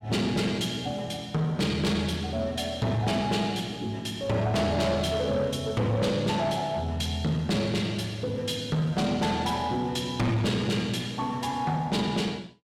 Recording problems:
distortion; soft clipping, signal-to-distortion ratio 10 dB

